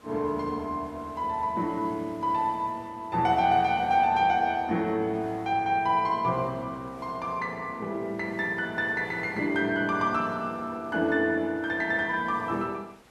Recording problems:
background hiss; slope -4 dB per octave, SNR 27 dB

